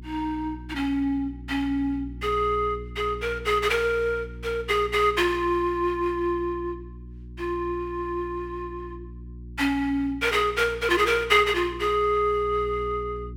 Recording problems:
hum; 60 Hz, harmonics up to 360 Hz, SNR 16 dB

